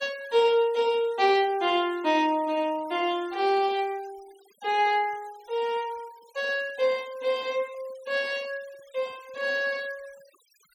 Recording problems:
noise reduction artefacts; signal-to-artefact ratio 23 dB

